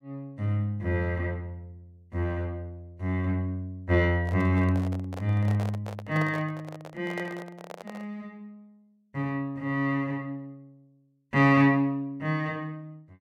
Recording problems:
microphone handling noise; from 4 to 8 s; peak -6 dB vs average level

